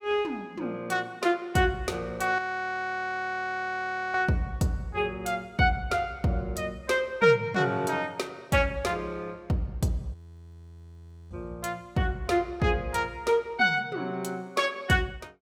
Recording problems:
frozen audio; at 2.5 s for 1.5 s and at 10 s for 1 s

